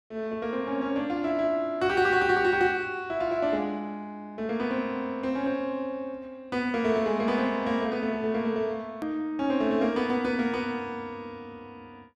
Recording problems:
edit click; at 9 s

